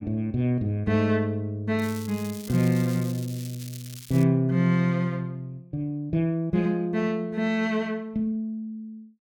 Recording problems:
crackling; from 2 to 4 s; loose cable, SNR 17 dB

